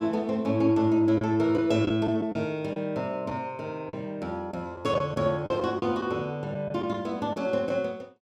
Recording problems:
packet loss; 6% of the sound replaced, filled with the last packet

